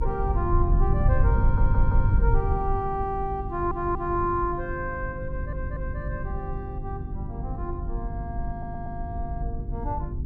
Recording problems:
hum; 50 Hz, harmonics up to 400 Hz, SNR 8 dB
low-frequency rumble; below 88 Hz, SNR -2 dB
stutter; 4 times, first at 1.5 s

